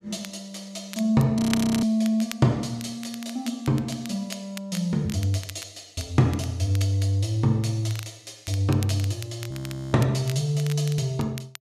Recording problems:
crackle; vinyl, SNR 16 dB
frozen audio; at 1.5 s and at 9.5 s

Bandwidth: 14 kHz